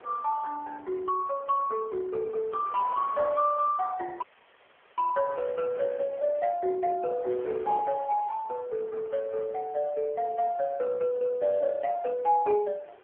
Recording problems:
phone line; 320 Hz to 2.3 kHz, AMR-NB
wind on the microphone; below 1.4 kHz, SNR 22 dB
dropout; at 4 s for 1 s

